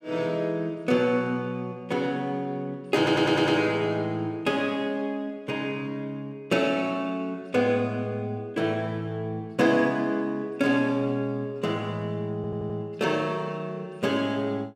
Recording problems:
audio stuttering; at 3 s and at 12 s

